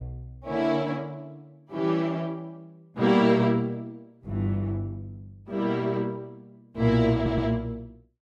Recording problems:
stutter; at 7 s

